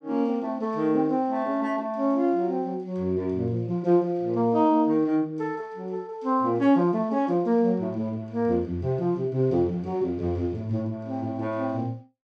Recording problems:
none

